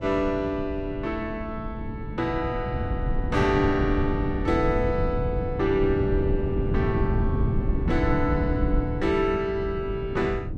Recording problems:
wind on the microphone; below 160 Hz, SNR 3 dB

